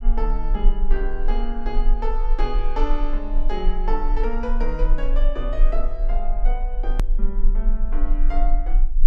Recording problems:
low-frequency rumble; below 32 Hz, strongest tone 22 Hz, SNR -6 dB
edit click; at 7 s

